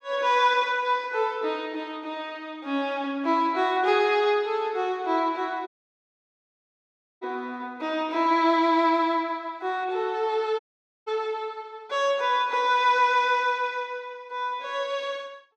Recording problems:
audio cutting out; at 5.5 s for 1.5 s and at 11 s

